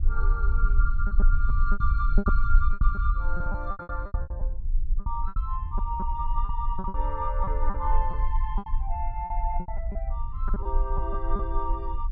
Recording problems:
rumble; below 46 Hz, SNR -5 dB
packet loss; 13% of the sound replaced, filled with repeated pitch periods

